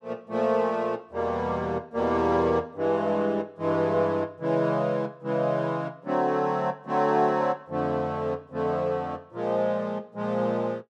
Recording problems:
none

